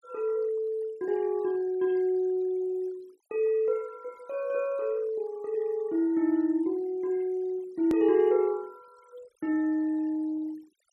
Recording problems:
denoising artefacts; signal-to-artefact ratio 27 dB
click at an edit; at 8 s

